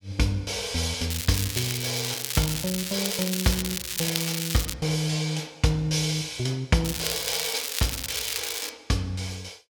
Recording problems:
crackling; from 1 to 4.5 s and from 7 to 8.5 s; loose cable, SNR 2 dB

